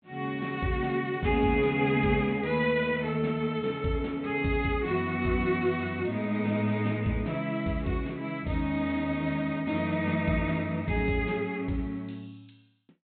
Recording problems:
treble missing; nothing above 4 kHz

